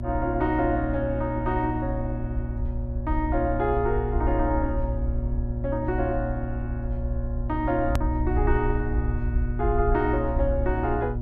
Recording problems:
hum; 60 Hz, harmonics up to 720 Hz, SNR 6 dB
rumble; below 64 Hz, SNR 3 dB
edit click; at 8 s

